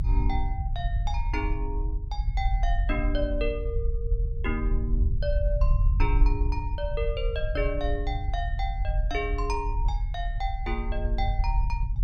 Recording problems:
rumble; below 60 Hz, strongest tone 38 Hz, SNR -4 dB

